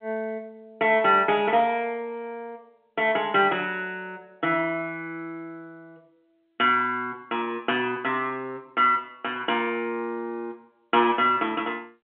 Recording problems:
phone line; 170 Hz to 3.5 kHz, G.711

